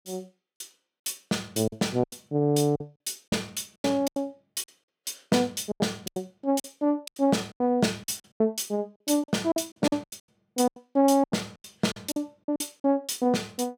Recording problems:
lost packets; 15% of the sound replaced, filled with silence

